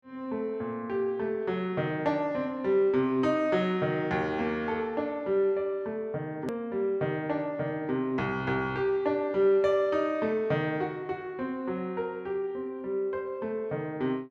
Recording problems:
click at an edit; at 6.5 s

